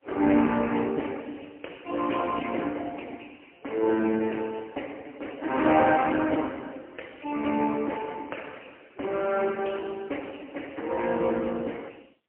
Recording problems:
phone line; 260 Hz to 3 kHz, AMR-NB, then MP3

